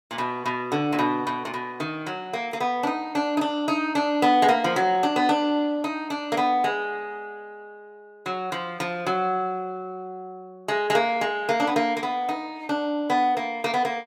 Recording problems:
none

